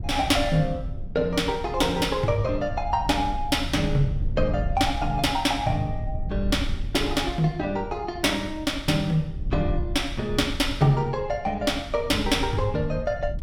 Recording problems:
low-frequency rumble; below 84 Hz, SNR 9 dB

